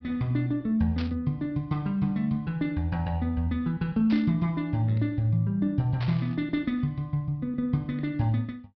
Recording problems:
treble missing; nothing above 5.5 kHz
burst of static; at 1 s, at 4 s and at 6 s; peak -8 dB vs average level

